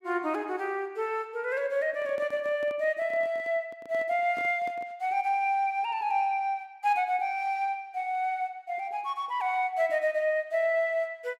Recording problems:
handling noise; from 2 to 5 s; peak -11 dB vs average level

